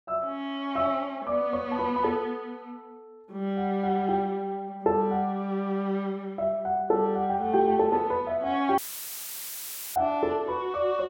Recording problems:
audio cutting out; at 9 s for 1 s; filled with static

